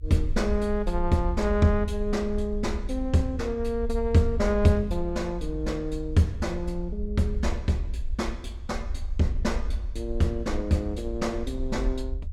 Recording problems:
low-frequency rumble; below 58 Hz, SNR 7 dB

